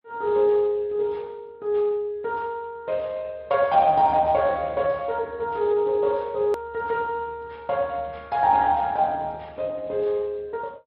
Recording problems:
treble missing; nothing above 5.5 kHz
codec artefacts; Speex, log-spectral distance 2 dB
click at an edit; at 6.5 s

